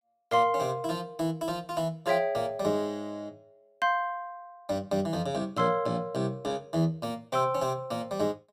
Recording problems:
none

